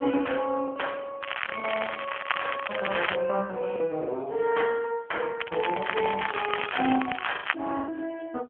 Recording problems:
telephone audio; 220 Hz to 3.3 kHz, AMR-NB
lost packets; 5% of the sound replaced, filled with the last packet
crackle; from 1 to 3 s and from 5.5 to 7.5 s; loose cable, SNR 4 dB

